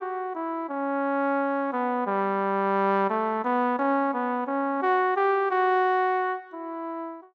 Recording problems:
none

